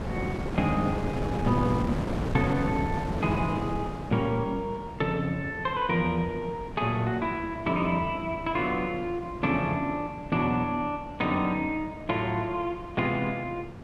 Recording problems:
wind noise; below 470 Hz, SNR 7 dB

